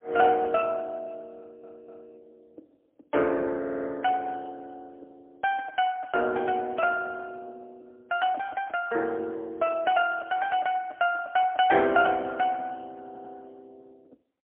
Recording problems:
telephone audio; 260 Hz to 3.3 kHz, AMR-NB, then MP3
audio stuttering; at 1.5 s, at 3.5 s and at 13 s

